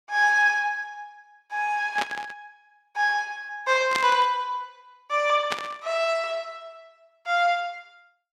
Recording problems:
burst of static; at 2 s, at 4 s and at 5.5 s; peak 0 dB vs average level

